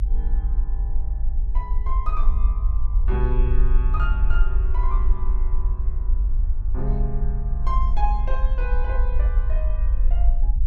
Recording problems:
low-frequency rumble; below 50 Hz, SNR -9 dB

